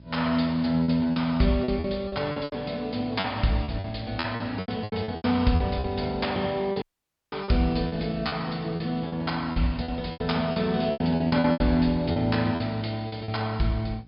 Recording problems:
low-pass filter; nothing above 5.5 kHz
electrical hum; 60 Hz, harmonics up to 660 Hz, SNR 22 dB
background hiss; SNR 41 dB
lost packets; 13% of the sound replaced, filled with repeated pitch periods
dropout; at 7 s for 0.5 s

